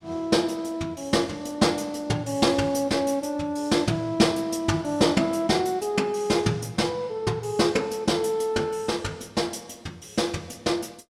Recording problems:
none

